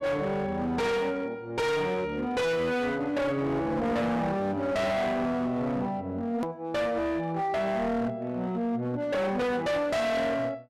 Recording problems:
distortion; hard clipping, signal-to-distortion ratio 6 dB
hard cut with a click; at 6.5 s

